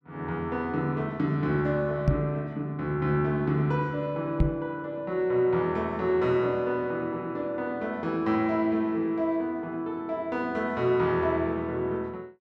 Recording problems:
microphone bump; at 2 s and at 4.5 s; peak +8 dB vs average level

